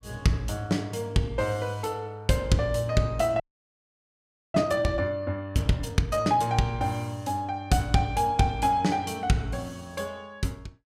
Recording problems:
frozen audio; at 3.5 s for 1 s

